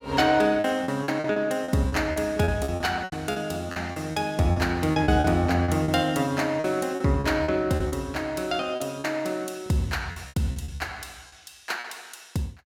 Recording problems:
packet loss; 13% of the sound replaced, filled with repeated pitch periods

